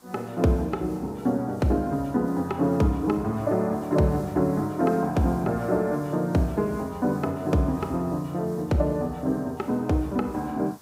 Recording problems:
background hiss; SNR 26 dB

